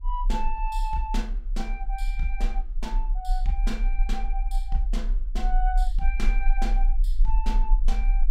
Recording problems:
low-frequency rumble; below 36 Hz, strongest tone 30 Hz, SNR -6 dB

